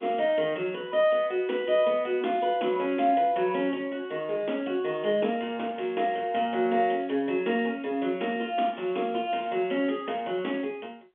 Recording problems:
phone line; 240 Hz to 3.5 kHz, G.711

